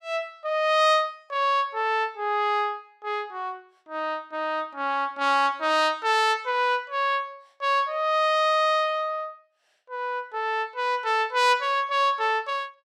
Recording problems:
none

